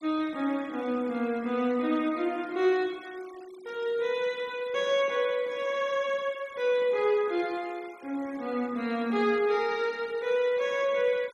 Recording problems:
noise reduction artefacts; signal-to-artefact ratio 23 dB

